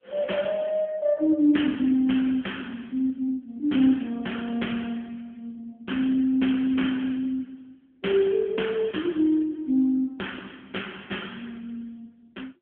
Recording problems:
phone line; 190 Hz to 3.3 kHz, AMR-NB

